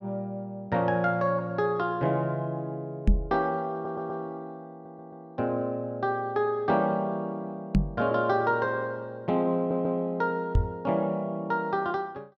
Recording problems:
microphone thump; at 3 s, at 8 s and at 11 s; peak +9 dB vs average level
audio stuttering; at 3.5 s, at 4.5 s and at 9.5 s

